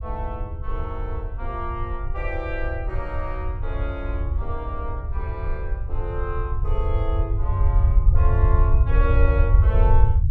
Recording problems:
low-frequency rumble; below 74 Hz, SNR -8 dB

